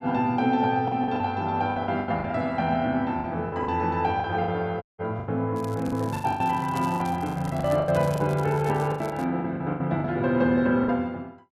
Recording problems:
packet loss; 13% of the sound replaced, filled with the last packet
audio cutting out; at 5 s
crackle; from 5.5 to 9.5 s; loose cable, SNR 22 dB

